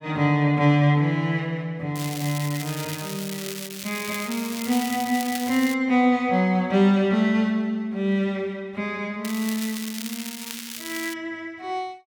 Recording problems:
crackle; from 2 to 5.5 s and from 9 to 11 s; loose cable, SNR 10 dB

